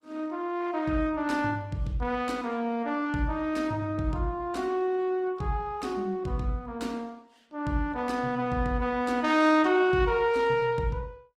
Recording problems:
lossy compression; Opus, log-spectral distance 2 dB, nothing above 18.9 kHz

